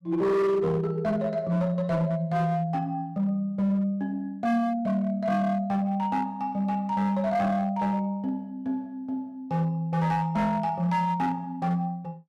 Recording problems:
distorted audio; hard clipping, signal-to-distortion ratio 11 dB

